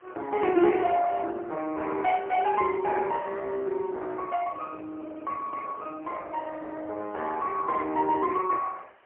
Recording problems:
phone line; 280 Hz to 3 kHz, AMR-NB, then MP3
hiss; SNR 30 dB

